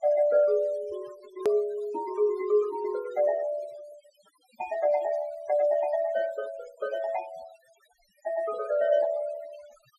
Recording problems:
noise reduction artefacts; signal-to-artefact ratio 20 dB
edit click; at 1.5 s

